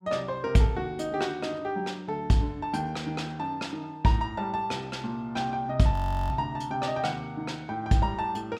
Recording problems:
frozen audio; at 6 s

